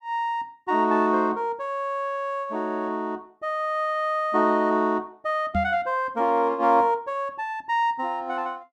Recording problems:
microphone bump; at 5.5 s; peak 0 dB vs average level

